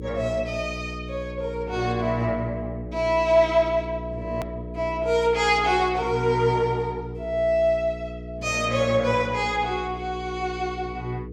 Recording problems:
electrical hum; 60 Hz, harmonics up to 480 Hz, SNR 12 dB
edit click; at 4.5 s

